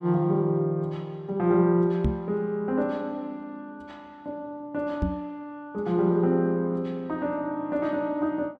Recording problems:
knock on the microphone; at 2 s and at 5 s; peak +5 dB vs average level

